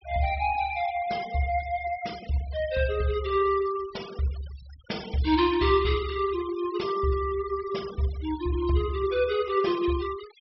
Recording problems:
treble cut off; nothing above 5.5 kHz
denoising artefacts; signal-to-artefact ratio 17 dB

